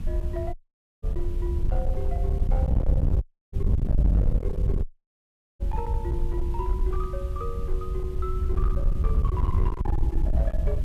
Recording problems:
distortion; hard clipping, uneven, signal-to-distortion ratio 12 dB
hiss; slope -3 dB per octave, SNR 18 dB
wind noise; below 78 Hz, SNR -9 dB
audio cutting out; at 0.5 s, at 3 s and at 5 s for 1 s

